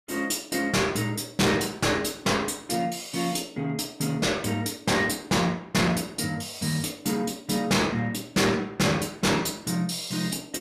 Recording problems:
distorted audio; hard clipping, signal-to-distortion ratio 7 dB

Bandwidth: 14.5 kHz